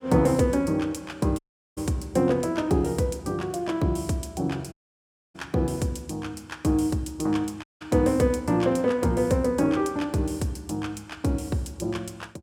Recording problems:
audio cutting out; at 1.5 s, at 4.5 s for 0.5 s and at 7.5 s

